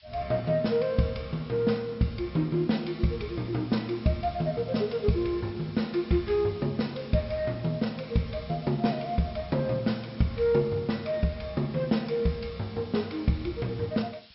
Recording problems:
treble missing; nothing above 5.5 kHz
background hiss; SNR 23 dB

